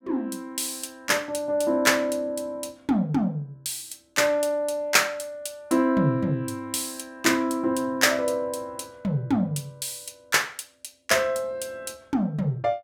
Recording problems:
none

